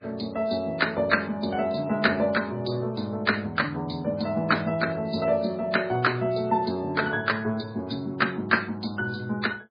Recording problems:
codec artefacts; MP3, log-spectral distance 4 dB, nothing above 4.6 kHz

